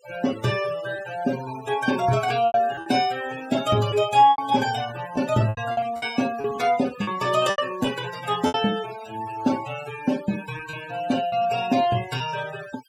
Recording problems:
noise reduction artefacts; signal-to-artefact ratio 15 dB
packet loss; 6% of the sound replaced, filled with repeated pitch periods

